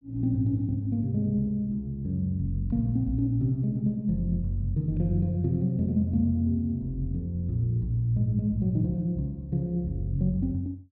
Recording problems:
treble missing; nothing above 5 kHz

